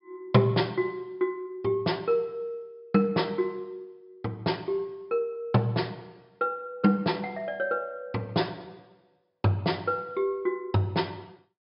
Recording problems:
treble missing; nothing above 5.5 kHz

